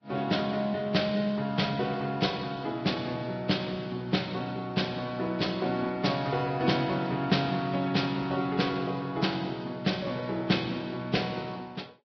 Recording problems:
codec artefacts; Vorbis, log-spectral distance 4 dB, nothing above 5.2 kHz

